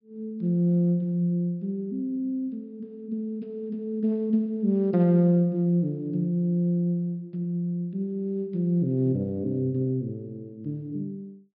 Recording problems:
treble missing; nothing above 5.5 kHz

